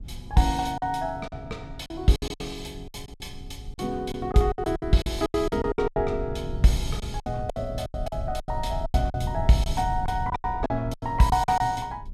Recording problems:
rumble; below 100 Hz, SNR 10 dB
packet loss; 14% of the sound replaced, filled with silence

